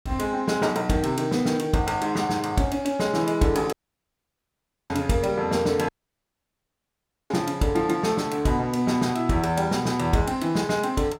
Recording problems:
audio cutting out; at 3.5 s for 1 s and at 6 s for 1.5 s

